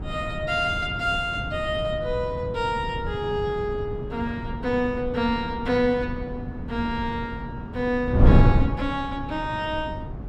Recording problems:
wind noise; below 170 Hz, SNR 2 dB

